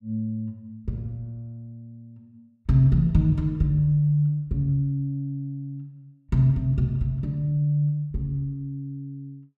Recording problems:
none

